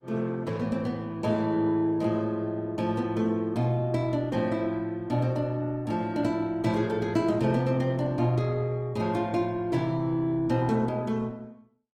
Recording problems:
codec artefacts; Opus, log-spectral distance 2 dB, nothing above 20.1 kHz

